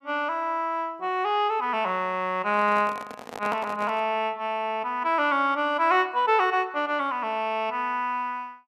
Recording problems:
handling noise; from 2.5 to 4 s; peak -5 dB vs average level

